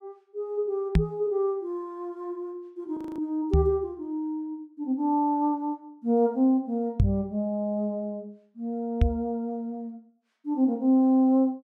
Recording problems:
knock on the microphone; 4 times, first at 1 s; peak +9 dB vs average level
audio freezing; at 3 s

